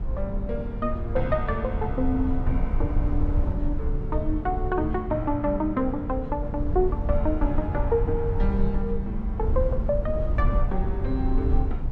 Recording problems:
low-frequency rumble; below 76 Hz, SNR 1 dB

